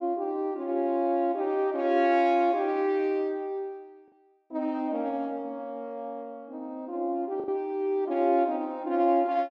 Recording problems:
packet loss; 0.9% of the sound replaced, filled with the last packet

